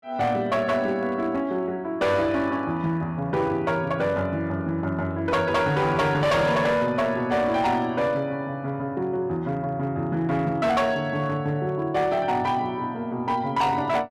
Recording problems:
distorted audio; hard clipping, signal-to-distortion ratio 10 dB

